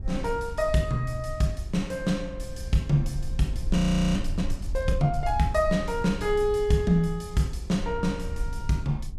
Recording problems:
low-frequency rumble; below 60 Hz, SNR 9 dB
frozen audio; at 4 s

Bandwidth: 15 kHz